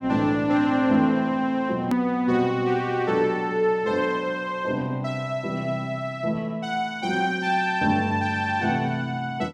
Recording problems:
hard cut with a click; at 2 s

